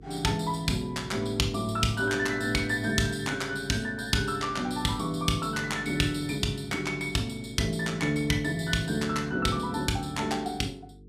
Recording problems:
hum; 50 Hz, harmonics up to 450 Hz, SNR 21 dB

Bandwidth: 14.5 kHz